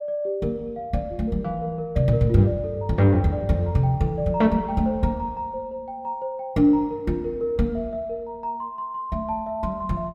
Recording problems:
none

